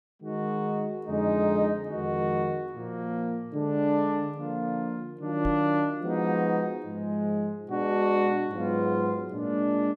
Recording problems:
microphone bump; at 5.5 s; peak -3 dB vs average level

